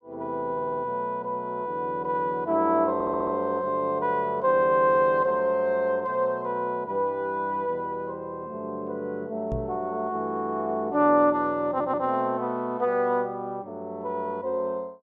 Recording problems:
stutter; at 0.5 s, at 3 s and at 12 s
microphone bump; at 9.5 s; peak -3 dB vs average level

